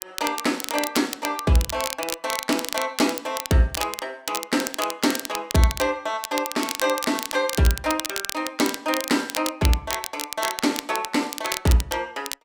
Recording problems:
crackle; vinyl, SNR 6 dB

